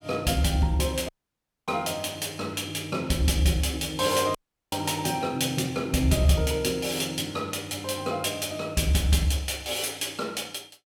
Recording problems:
audio cutting out; at 1 s for 0.5 s and at 4.5 s

